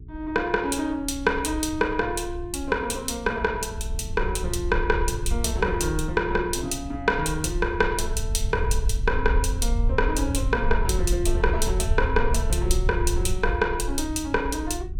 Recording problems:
hum; 60 Hz, harmonics up to 420 Hz, SNR 17 dB
rumble; below 66 Hz, SNR 4 dB

